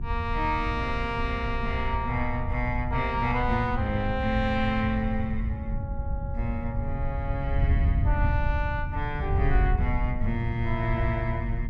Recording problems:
mains hum; 60 Hz, harmonics up to 1.1 kHz, SNR 20 dB
wind on the microphone; below 92 Hz, SNR 1 dB

